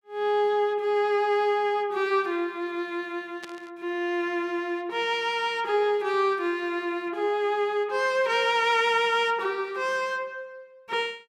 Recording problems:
static burst; at 3.5 s; peak -11 dB vs average level

